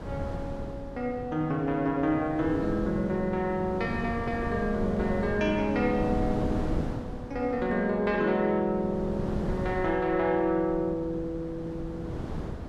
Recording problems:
wind noise; below 350 Hz, SNR 8 dB

